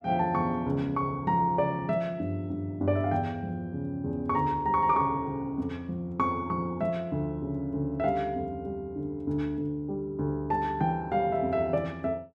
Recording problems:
none

